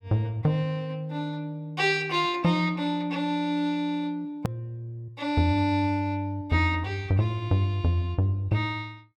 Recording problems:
edit click; at 4.5 s

